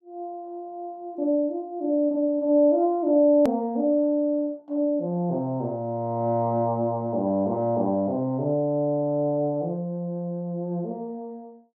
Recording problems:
click at an edit; at 3.5 s

